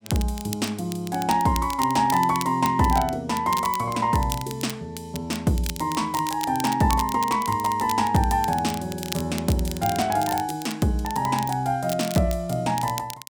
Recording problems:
crackling; vinyl, SNR 12 dB

